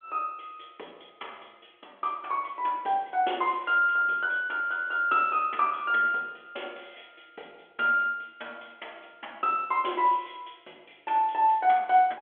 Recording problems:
phone line; 280 Hz to 3.4 kHz, G.726

